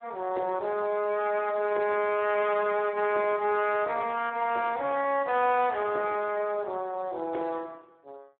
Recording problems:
phone line; 300 Hz to 3.5 kHz, Speex

